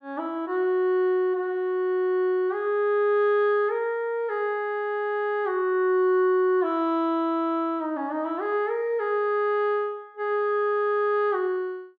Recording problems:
none

